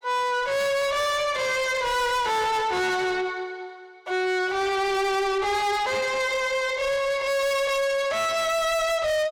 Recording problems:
distortion; soft clipping, signal-to-distortion ratio 6 dB

